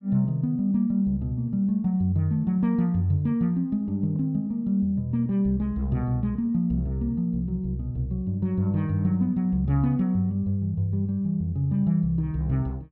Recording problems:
none

